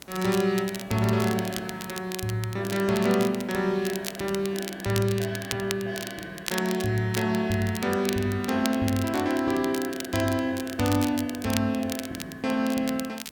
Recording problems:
background hiss; slope -6 dB per octave, SNR 28 dB
crackling; vinyl, SNR 11 dB

